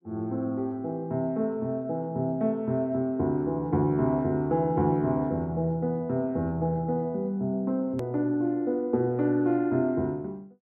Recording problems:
click at an edit; at 8 s

